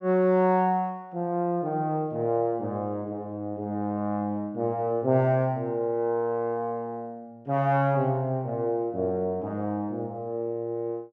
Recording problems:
none

